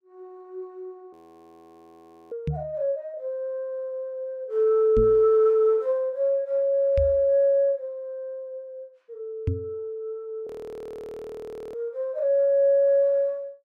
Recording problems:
frozen audio; at 1 s for 1 s and at 10 s for 1.5 s
microphone bump; 4 times, first at 2.5 s; peak +1 dB vs average level

